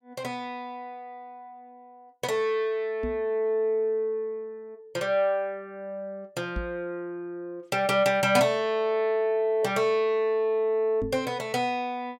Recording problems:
knock on the microphone; at 3 s, at 6.5 s and at 11 s; peak -3 dB vs average level

